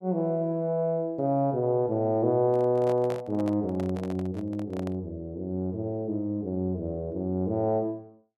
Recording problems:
handling noise; from 2.5 to 5 s; peak -5 dB vs average level

